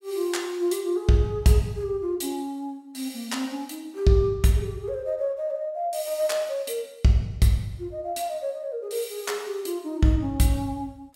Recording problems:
none

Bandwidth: 16 kHz